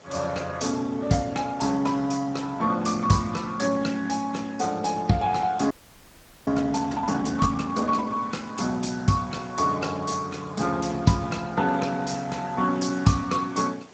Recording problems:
lossy compression; Speex, log-spectral distance 6 dB, nothing above 7.6 kHz
hiss; slope -5 dB per octave, SNR 24 dB
audio freezing; at 5.5 s for 1 s

